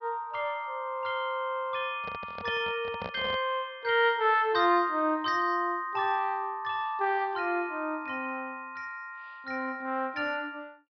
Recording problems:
low-pass filter; nothing above 5.5 kHz
microphone handling noise; from 2 to 3.5 s; peak -4 dB vs average level

